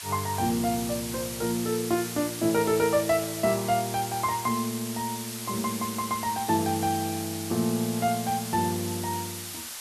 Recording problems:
background hiss; slope +2 dB per octave, SNR 7 dB

